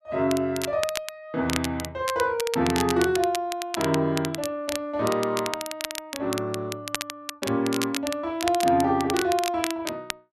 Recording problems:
crackle; vinyl, SNR 8 dB

